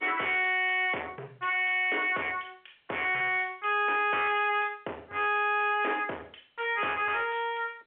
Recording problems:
phone line; 340 Hz to 3.4 kHz, G.711
distortion; hard clipping, signal-to-distortion ratio 7 dB

